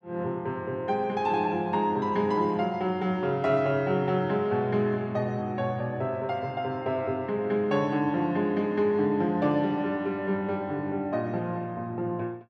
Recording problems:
none

